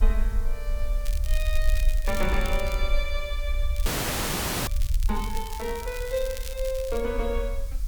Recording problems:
background hiss; slope +1 dB per octave, SNR 18 dB
low-frequency rumble; below 48 Hz, SNR -1 dB
crackling; from 1 to 3 s and from 4 to 7 s; loose cable, SNR 10 dB
frozen audio; at 4 s for 1 s

